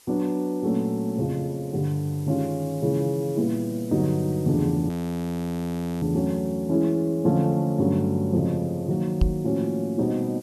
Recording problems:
hiss; SNR 24 dB
frozen audio; at 5 s for 1 s
knock on the microphone; at 9 s; peak +6 dB vs average level

